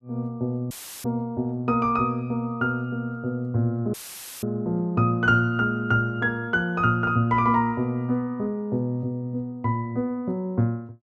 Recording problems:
dropout; at 0.5 s and at 4 s; filled with static

